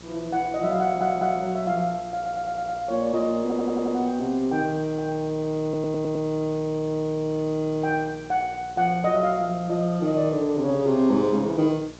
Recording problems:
low-pass filter; nothing above 8 kHz
hum; 60 Hz, harmonics up to 1.3 kHz, SNR 23 dB
hiss; SNR 23 dB
audio stuttering; 4 times, first at 1 s

